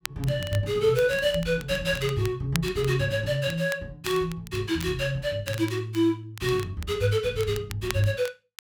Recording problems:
crackle; vinyl, SNR 16 dB

